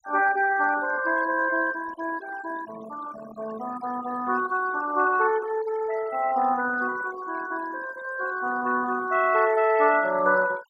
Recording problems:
noise reduction artefacts; signal-to-artefact ratio 17 dB

